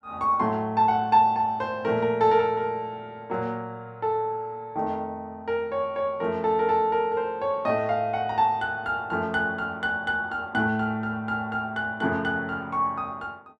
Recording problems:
none

